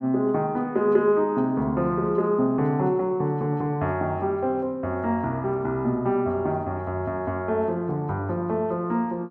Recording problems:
none

